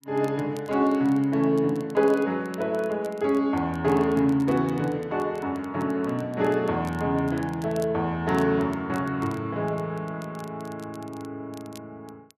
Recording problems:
crackle; vinyl, SNR 27 dB

